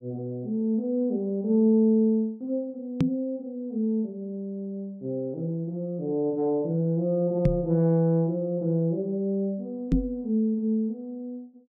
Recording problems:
knock on the microphone; at 3 s, at 7.5 s and at 10 s; peak +8 dB vs average level

